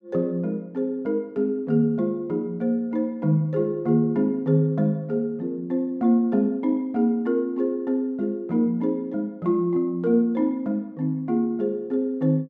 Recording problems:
none

